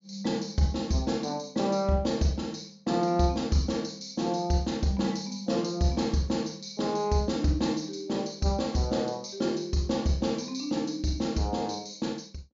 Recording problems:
treble cut off; nothing above 7.2 kHz

